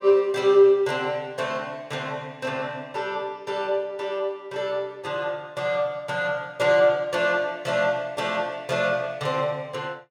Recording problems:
none

